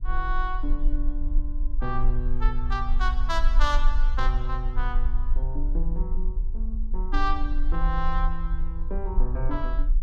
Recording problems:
rumble; below 36 Hz, strongest tone 20 Hz, SNR -4 dB

